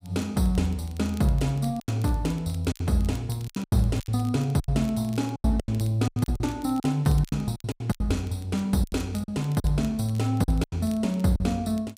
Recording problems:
crackling; vinyl, SNR 25 dB
packet loss; 12% of the sound replaced, filled with silence

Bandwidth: 15.5 kHz